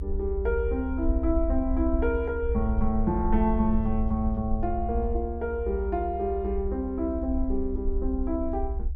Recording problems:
rumble; below 68 Hz, SNR 4 dB

